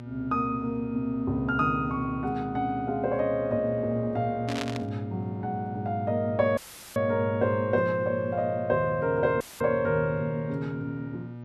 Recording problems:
electrical hum; 60 Hz, harmonics up to 1.2 kHz, SNR 13 dB
static burst; at 4.5 s; peak -2 dB vs average level
dropout; at 6.5 s and at 9.5 s; filled with static

